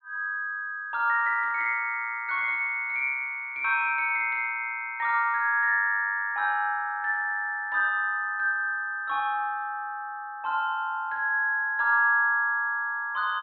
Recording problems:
treble cut off; nothing above 4.3 kHz

